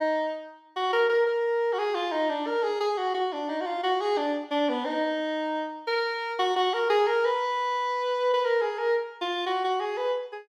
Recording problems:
none

